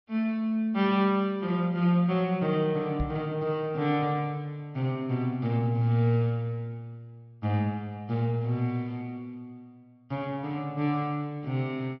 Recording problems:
treble missing; nothing above 5.8 kHz
microphone thump; at 3 s; peak 0 dB vs average level

